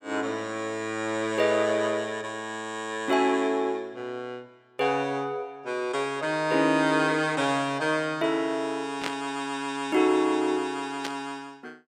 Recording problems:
static burst; at 9 s and at 11 s; peak 0 dB vs average level

